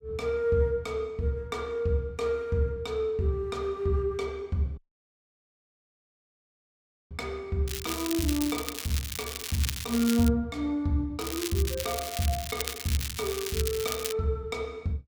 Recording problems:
audio cutting out; at 5 s for 2.5 s
crackle; from 7.5 to 10 s and from 11 to 14 s; loose cable, SNR 5 dB

